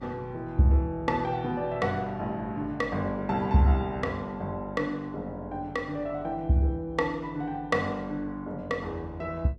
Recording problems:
mains hum; 50 Hz, harmonics up to 550 Hz, SNR 22 dB

